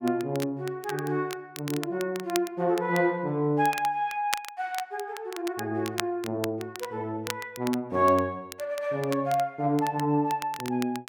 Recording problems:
crackling; vinyl, SNR 12 dB

